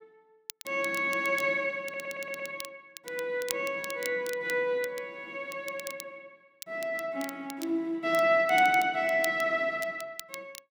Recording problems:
crackling; vinyl, SNR 15 dB
audio stuttering; at 2 s

